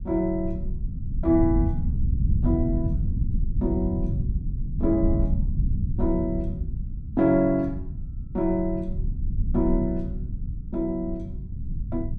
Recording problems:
low-frequency rumble; below 110 Hz, SNR 3 dB

